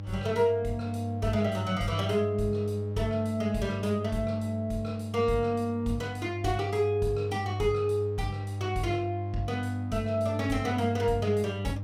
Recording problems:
hum; 50 Hz, harmonics up to 600 Hz, SNR 6 dB

